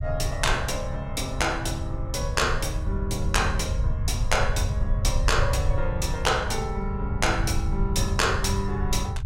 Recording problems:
low-frequency rumble; below 94 Hz, SNR 2 dB

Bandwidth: 16.5 kHz